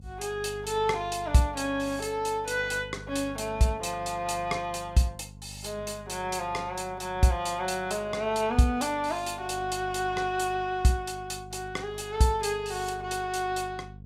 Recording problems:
electrical hum; 50 Hz, harmonics up to 450 Hz, SNR 17 dB

